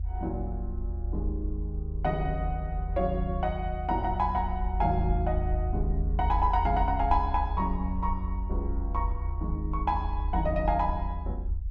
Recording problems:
rumble; below 76 Hz, strongest tone 46 Hz, SNR 2 dB

